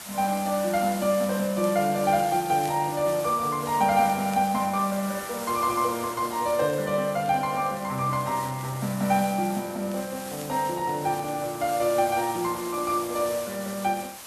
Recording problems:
hiss; SNR 12 dB
crackle; vinyl, SNR 28 dB

